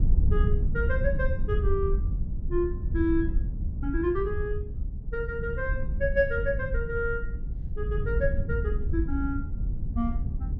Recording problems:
wind on the microphone; below 80 Hz, SNR 0 dB

